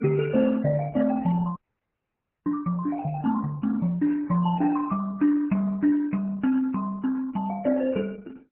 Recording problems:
lossy codec; MP3, then Opus, log-spectral distance 3 dB
frozen audio; at 1.5 s for 1 s
static burst; at 3 s, at 4 s and at 6.5 s; peak -22 dB vs average level

